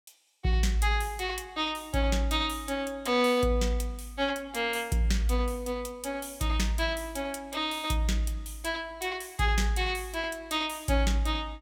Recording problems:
none

